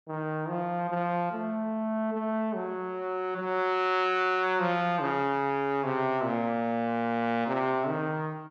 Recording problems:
none

